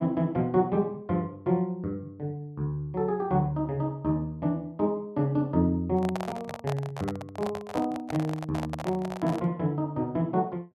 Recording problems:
microphone handling noise; from 6 to 9.5 s; peak -1 dB vs average level

